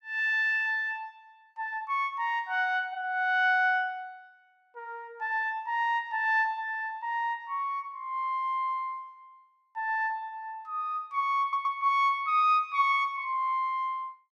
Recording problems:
audio stuttering; at 11 s

